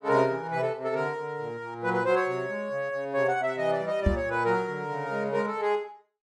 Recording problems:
knock on the microphone; at 4 s; peak +7 dB vs average level

